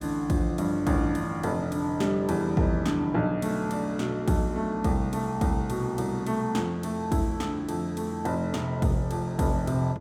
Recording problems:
none

